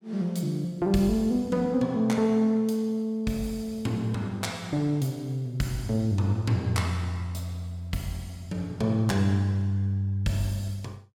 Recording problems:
none

